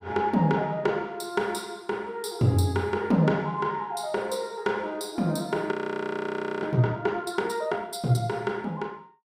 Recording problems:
audio freezing; at 5.5 s for 1 s

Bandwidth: 15.5 kHz